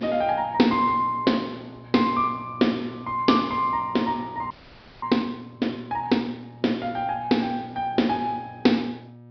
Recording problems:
treble cut off; nothing above 5.5 kHz
hum; 60 Hz, harmonics up to 960 Hz, SNR 21 dB
frozen audio; at 4.5 s for 0.5 s

